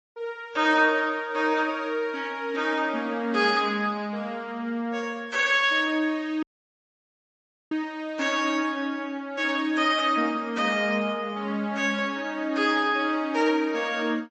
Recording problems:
codec artefacts; MP3, log-spectral distance 2 dB, nothing above 7.1 kHz
audio cutting out; at 6.5 s for 1.5 s

